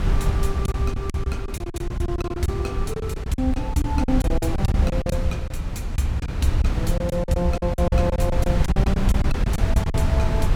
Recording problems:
wind on the microphone; below 120 Hz, SNR -1 dB
packet loss; 15% of the sound replaced, filled with silence

